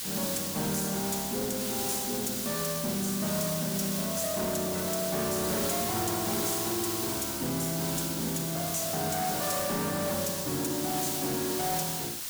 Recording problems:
distorted audio; hard clipping, signal-to-distortion ratio 12 dB
background hiss; slope +2 dB per octave, SNR 0 dB

